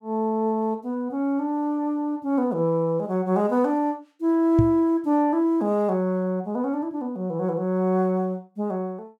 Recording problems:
microphone bump; at 4.5 s; peak +6 dB vs average level

